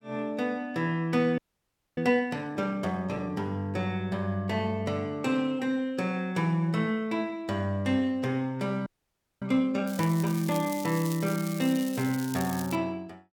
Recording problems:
frozen audio; at 1.5 s for 0.5 s and at 9 s for 0.5 s
crackling; from 10 to 13 s; loose cable, SNR 12 dB

